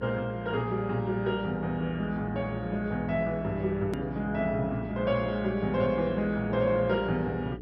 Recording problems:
lossy codec; MP2, log-spectral distance 2 dB, nothing above 13.1 kHz
hum; 60 Hz, harmonics up to 420 Hz, SNR 13 dB
edit click; at 4 s

